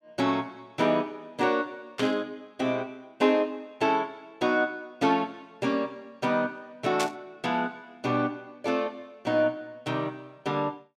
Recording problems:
static burst; at 2 s and at 7 s; peak +2 dB vs average level

